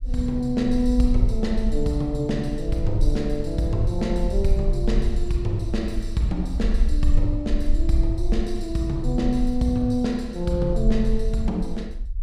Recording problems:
rumble; below 46 Hz, SNR 4 dB

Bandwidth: 15 kHz